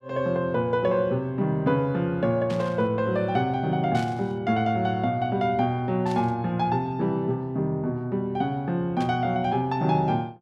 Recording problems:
burst of static; 4 times, first at 2.5 s; peak -11 dB vs average level

